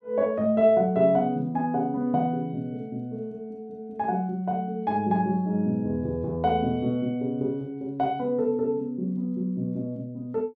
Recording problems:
none

